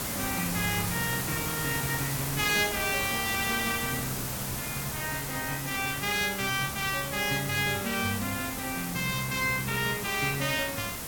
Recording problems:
background hiss; slope -3 dB per octave, SNR 3 dB

